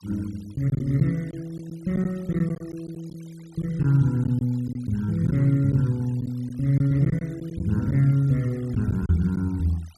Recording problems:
noise reduction artefacts; signal-to-artefact ratio 28 dB
lost packets; 6% of the sound replaced, filled with silence

